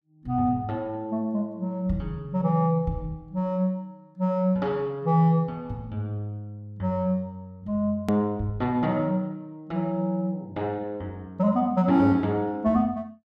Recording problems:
edit click; at 8 s

